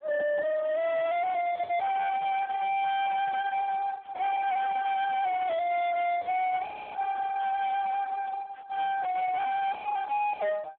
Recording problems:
telephone audio; 860 Hz to 3 kHz, Speex
distorted audio; hard clipping, signal-to-distortion ratio 6 dB

